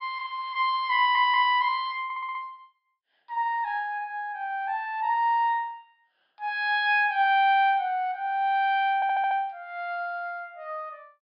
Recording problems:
low-pass filter; nothing above 5.5 kHz
stutter; at 1 s, at 2 s and at 9 s

